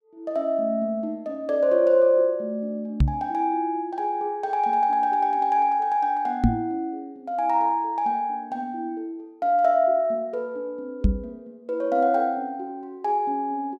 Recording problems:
microphone bump; at 3 s, at 6.5 s and at 11 s; peak +8 dB vs average level

